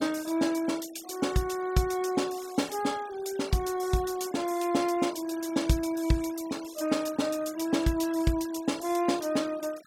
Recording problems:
denoising artefacts; signal-to-artefact ratio 18 dB

